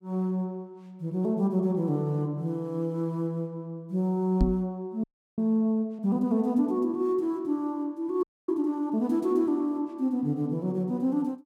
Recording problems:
knock on the microphone; at 4.5 s; peak +6 dB vs average level
frozen audio; at 5 s and at 8 s

